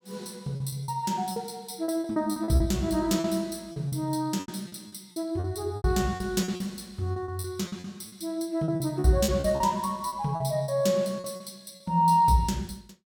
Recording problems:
packet loss; 13% of the sound replaced, filled with repeated pitch periods

